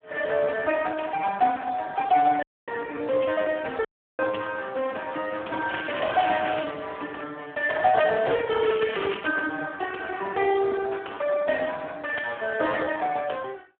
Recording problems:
phone line; 240 Hz to 3.1 kHz, Speex
audio cutting out; at 2.5 s and at 4 s
crackle; at 5.5 s and at 8.5 s; loose cable, SNR 12 dB

